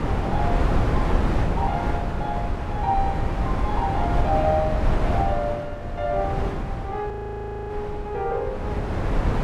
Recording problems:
wind on the microphone; below 350 Hz, SNR -2 dB
audio freezing; at 7 s for 0.5 s

